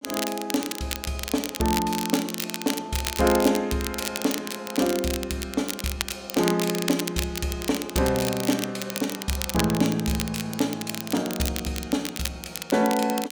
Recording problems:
crackling; vinyl, SNR 5 dB

